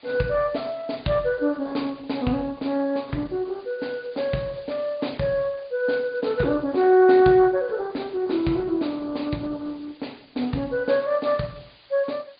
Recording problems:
treble cut off; nothing above 4.8 kHz
lossy codec; Opus, log-spectral distance 5 dB
background hiss; SNR 29 dB

